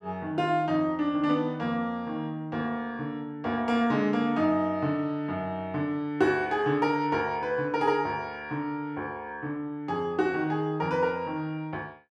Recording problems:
none

